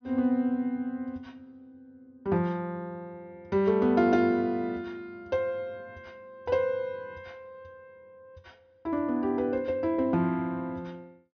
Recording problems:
treble missing; nothing above 6.2 kHz

